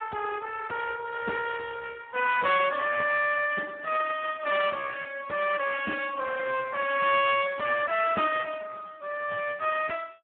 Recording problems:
telephone audio; 220 Hz to 3.3 kHz, Speex

